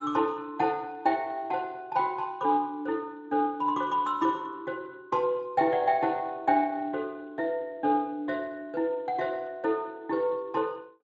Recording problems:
codec artefacts; Speex, log-spectral distance 2 dB, nothing above 7.3 kHz

